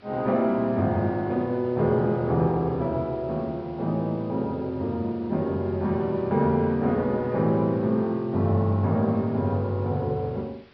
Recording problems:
treble cut off; nothing above 5.5 kHz
hiss; SNR 29 dB

